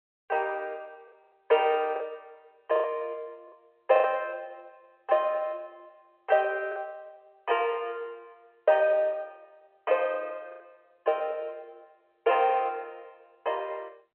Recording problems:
telephone audio; 370 Hz to 3.1 kHz, G.711
lost packets; 4% of the sound replaced, filled with the last packet

